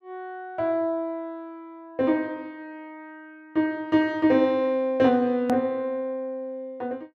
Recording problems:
hard cut with a click; at 5.5 s

